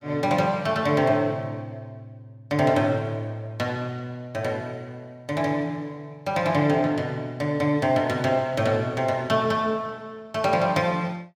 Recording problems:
none

